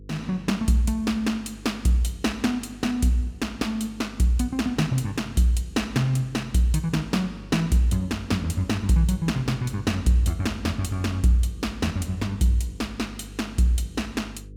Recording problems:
hum; 50 Hz, harmonics up to 500 Hz, SNR 18 dB

